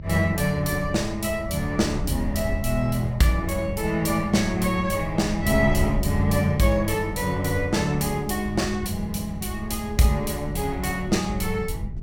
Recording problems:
electrical hum; 50 Hz, harmonics up to 650 Hz, SNR 18 dB
wind on the microphone; below 92 Hz, SNR 10 dB

